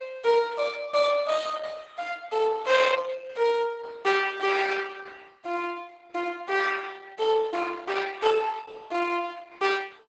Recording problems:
codec artefacts; Opus, log-spectral distance 5 dB, nothing above 7.8 kHz

